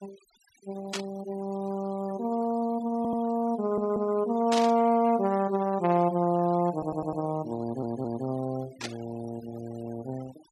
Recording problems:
noise reduction artefacts; signal-to-artefact ratio 20 dB
burst of static; at 1 s, at 4.5 s and at 9 s; peak 0 dB vs average level
stutter; 4 times, first at 3 s

